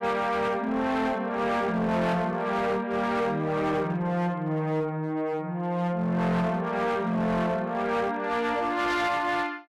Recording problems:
distorted audio; hard clipping, signal-to-distortion ratio 10 dB

